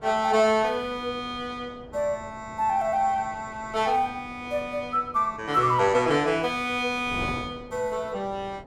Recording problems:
wind noise; below 580 Hz, SNR 19 dB

